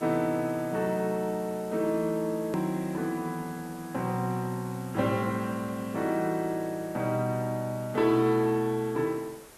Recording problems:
hiss; slope -4 dB per octave, SNR 19 dB
hard cut with a click; at 2.5 s

